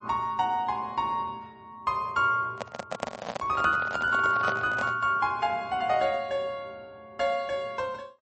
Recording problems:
codec artefacts; MP3, log-spectral distance 2 dB, nothing above 8 kHz
microphone handling noise; from 2.5 to 5 s; peak 0 dB vs average level

